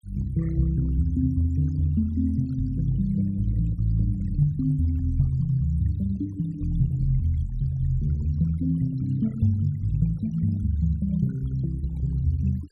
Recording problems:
denoising artefacts; signal-to-artefact ratio 27 dB

